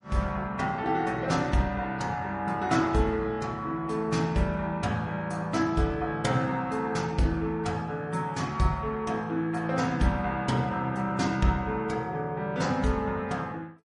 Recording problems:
lossy compression; MP3, log-spectral distance 2 dB, nothing above 10.4 kHz

